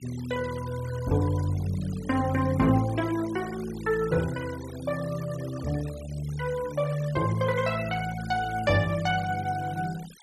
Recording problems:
denoising artefacts; signal-to-artefact ratio 17 dB

